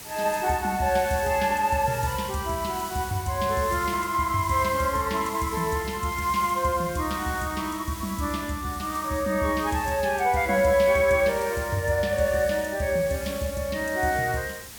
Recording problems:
hiss; slope -1 dB per octave, SNR 13 dB

